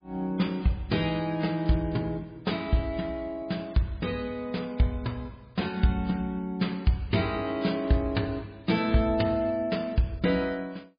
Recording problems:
lossy codec; MP3, log-spectral distance 3 dB

